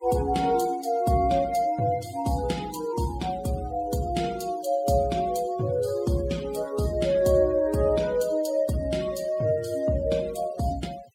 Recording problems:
noise reduction artefacts; signal-to-artefact ratio 20 dB

